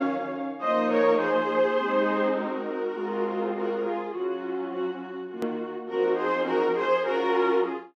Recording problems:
edit click; at 5.5 s

